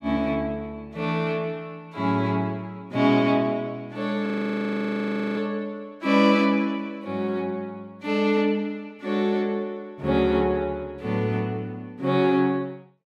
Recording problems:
frozen audio; at 4.5 s for 1 s

